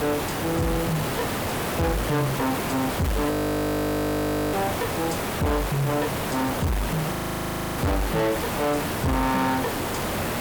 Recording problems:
distorted audio; soft clipping, signal-to-distortion ratio 7 dB
background hiss; slope -5 dB per octave, SNR 1 dB
frozen audio; at 3.5 s for 1 s and at 7 s for 0.5 s

